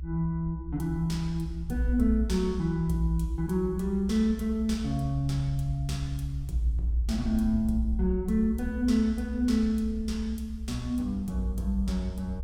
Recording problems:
rumble; below 68 Hz, strongest tone 66 Hz, SNR 9 dB

